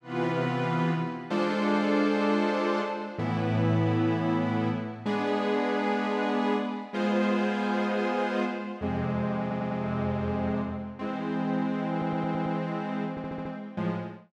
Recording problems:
stutter; at 9.5 s, at 12 s and at 13 s

